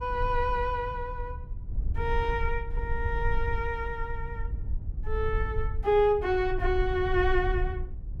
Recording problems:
rumble; below 68 Hz, SNR 5 dB

